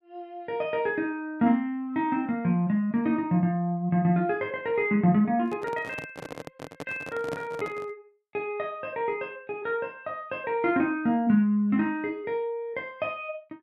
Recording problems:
handling noise; from 5.5 to 8 s; peak -4 dB vs average level

